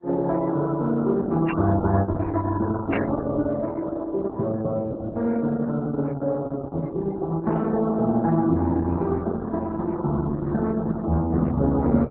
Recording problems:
codec artefacts; MP3, then Opus, log-spectral distance 3 dB
static burst; at 1.5 s and at 3 s; peak -1 dB vs average level

